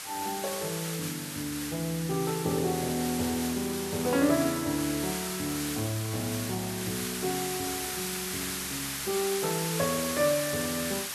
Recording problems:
hiss; slope +1 dB per octave, SNR 2 dB

